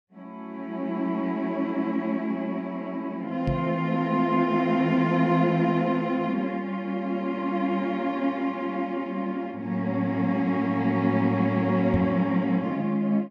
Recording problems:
microphone bump; at 3.5 s and at 12 s; peak +1 dB vs average level

